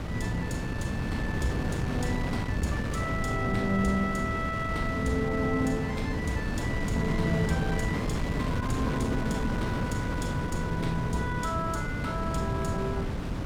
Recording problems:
wind on the microphone; below 320 Hz, SNR 0 dB

